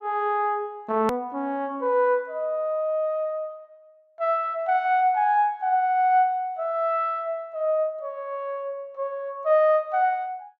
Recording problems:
edit click; at 1 s

